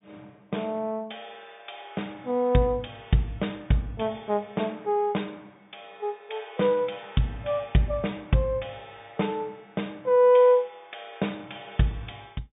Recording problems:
treble cut off; nothing above 3.7 kHz

